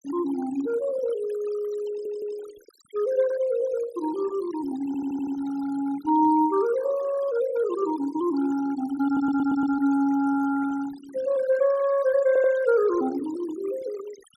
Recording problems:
denoising artefacts; signal-to-artefact ratio 18 dB
audio stuttering; 4 times, first at 2 s

